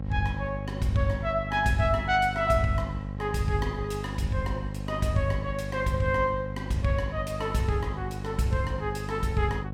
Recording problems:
hum; 50 Hz, harmonics up to 850 Hz, SNR 7 dB

